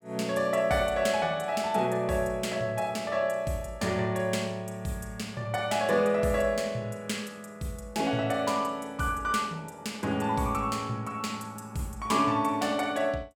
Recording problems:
none

